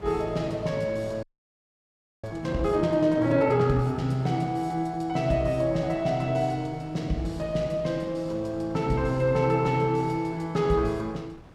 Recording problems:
wind on the microphone; below 680 Hz, SNR 21 dB
frozen audio; at 1 s for 1 s

